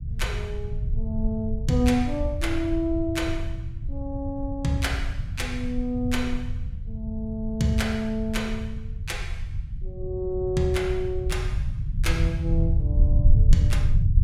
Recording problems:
low-frequency rumble; below 82 Hz, SNR 1 dB

